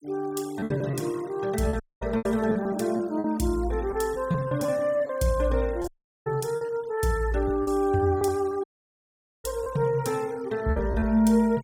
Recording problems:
denoising artefacts; signal-to-artefact ratio 23 dB
lost packets; 8% of the sound replaced, filled with repeated pitch periods
dropout; at 2 s, at 6 s and at 8.5 s for 1 s

